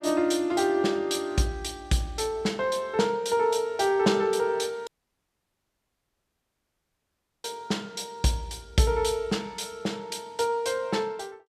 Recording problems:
audio cutting out; at 5 s for 2.5 s

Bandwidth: 14.5 kHz